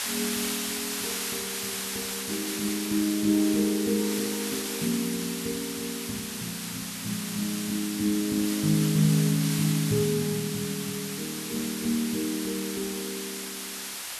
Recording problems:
background hiss; slope +2 dB per octave, SNR 3 dB

